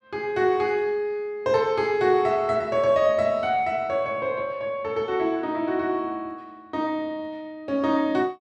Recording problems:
none

